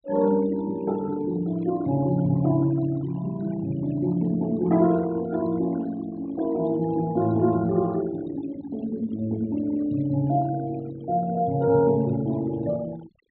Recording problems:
treble missing; nothing above 4.1 kHz
denoising artefacts; signal-to-artefact ratio 20 dB

